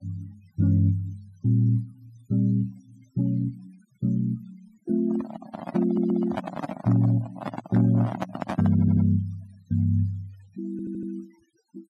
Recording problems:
denoising artefacts; signal-to-artefact ratio 21 dB
handling noise; from 5 to 9 s; peak -1 dB vs average level
stutter; at 6 s, at 8.5 s and at 11 s

